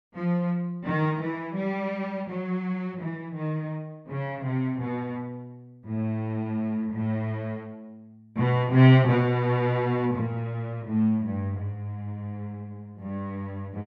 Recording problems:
none

